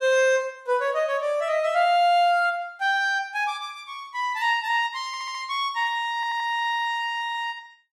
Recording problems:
stutter; at 5 s and at 6 s

